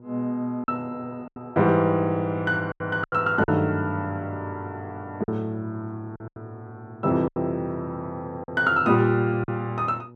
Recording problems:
hum; 60 Hz, harmonics up to 960 Hz, SNR 23 dB
lost packets; 6% of the sound replaced, filled with silence

